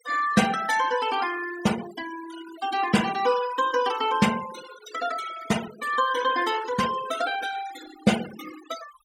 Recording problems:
noise reduction artefacts; signal-to-artefact ratio 12 dB

